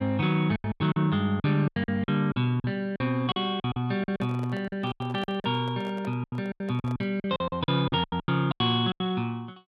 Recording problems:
lost packets; 18% of the sound replaced, filled with silence
microphone handling noise; from 4 to 7 s; peak -10 dB vs average level

